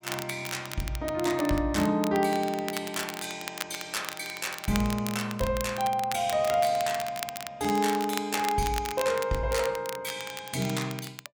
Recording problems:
crackle; vinyl, SNR 10 dB

